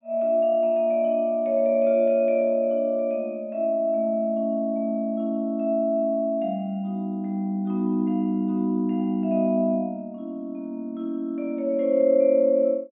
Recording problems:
low-pass filter; nothing above 4 kHz

